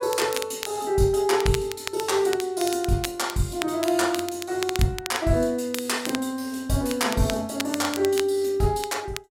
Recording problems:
crackle; vinyl, SNR 10 dB

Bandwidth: 16 kHz